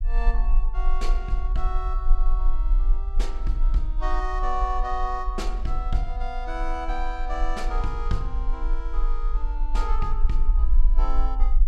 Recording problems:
rumble; below 38 Hz, strongest tone 22 Hz, SNR -5 dB

